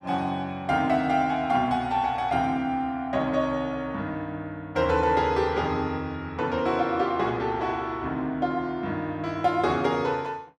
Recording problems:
none

